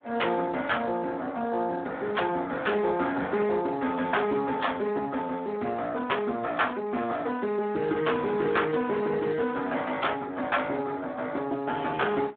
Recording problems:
phone line; 150 Hz to 3.5 kHz, Speex
distorted audio; soft clipping, signal-to-distortion ratio 12 dB

